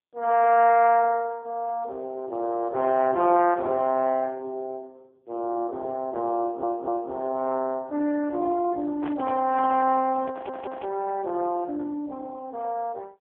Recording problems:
telephone audio; 260 Hz to 3 kHz, AMR-NB
stutter; at 6.5 s and at 10 s
microphone handling noise; from 9 to 11 s; peak -9 dB vs average level

